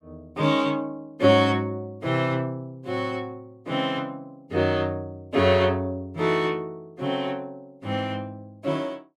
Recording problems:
none

